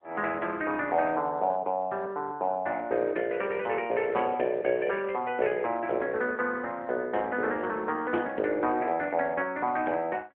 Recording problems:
telephone audio; 240 Hz to 3.5 kHz, AMR-NB

